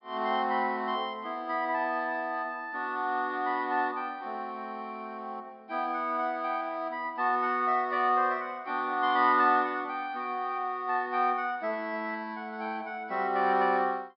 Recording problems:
low-pass filter; nothing above 5.5 kHz

